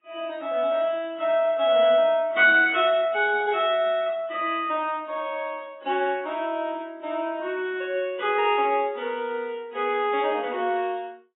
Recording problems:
codec artefacts; AAC, log-spectral distance 2 dB, nothing above 3.3 kHz

